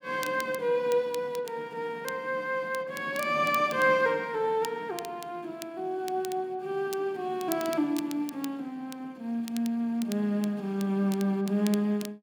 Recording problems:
crackling; vinyl, SNR 16 dB

